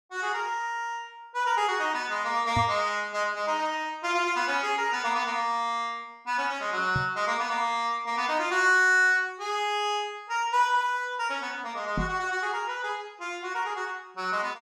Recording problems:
microphone thump; at 2.5 s, at 7 s and at 12 s; peak +1 dB vs average level

